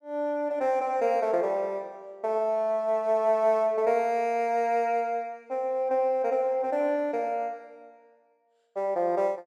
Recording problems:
none

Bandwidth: 13.5 kHz